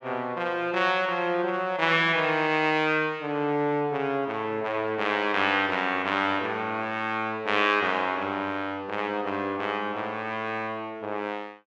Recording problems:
none

